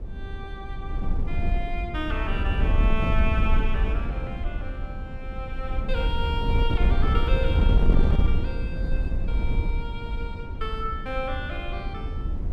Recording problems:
wind on the microphone; below 74 Hz, SNR -6 dB

